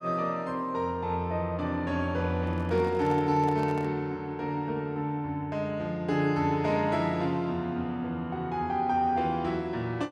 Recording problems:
handling noise; from 2.5 to 4 s; peak -7 dB vs average level

